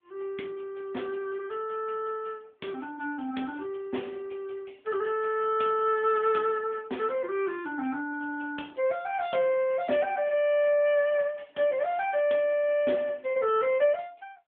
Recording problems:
phone line; 190 Hz to 3.4 kHz, AMR-NB

